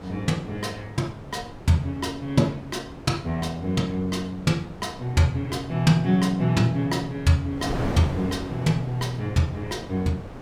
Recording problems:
wind on the microphone; below 630 Hz, SNR 13 dB

